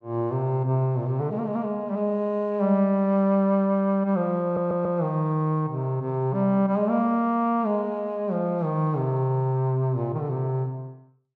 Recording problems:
stutter; at 4.5 s

